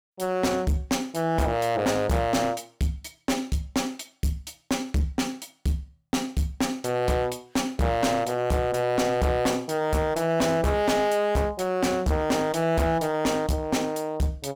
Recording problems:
distortion; hard clipping, uneven, signal-to-distortion ratio 6 dB

